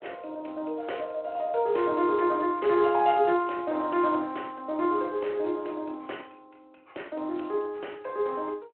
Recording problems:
phone line; 280 Hz to 3.3 kHz, Speex

